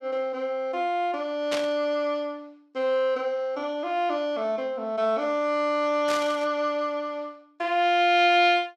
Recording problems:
static burst; at 1.5 s and at 6 s; peak -1 dB vs average level

